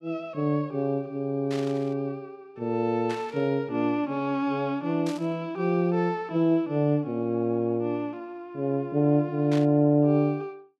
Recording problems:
burst of static; 4 times, first at 1.5 s; peak -9 dB vs average level

